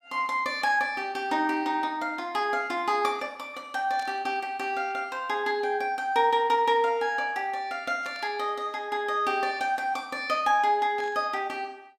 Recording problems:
static burst; at 4 s, at 8 s and at 11 s; peak -13 dB vs average level

